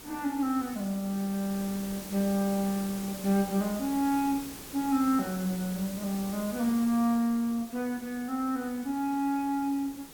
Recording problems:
background hiss; SNR 13 dB

